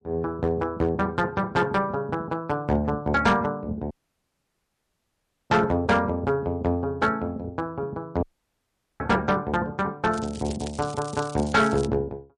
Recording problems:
lossy codec; MP3, log-spectral distance 2 dB, nothing above 8.2 kHz
distortion; hard clipping, signal-to-distortion ratio 10 dB
audio cutting out; at 4 s for 1.5 s and at 8 s for 1 s
crackling; from 10 to 12 s; loose cable, SNR 16 dB

